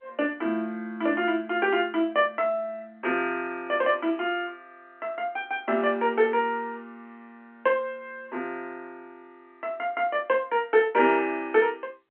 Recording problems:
phone line; 190 Hz to 3.2 kHz, G.711

